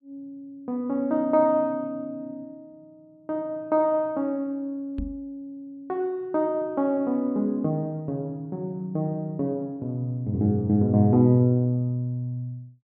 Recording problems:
microphone bump; at 5 s; peak -4 dB vs average level

